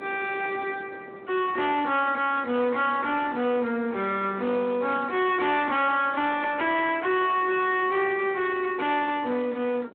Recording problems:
phone line; 220 Hz to 3.2 kHz, Speex
distortion; soft clipping, signal-to-distortion ratio 10 dB
wind noise; below 660 Hz, SNR 20 dB

